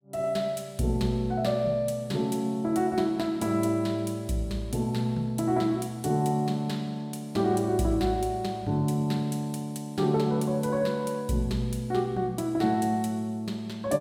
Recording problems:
none

